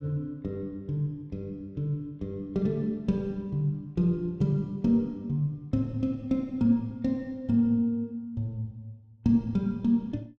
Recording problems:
none

